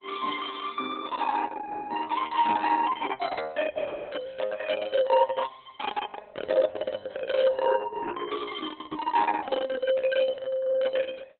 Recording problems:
codec artefacts; Opus, log-spectral distance 4 dB, nothing above 3.6 kHz

